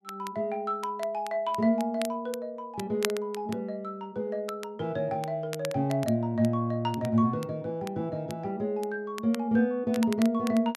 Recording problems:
crackling; vinyl, SNR 15 dB

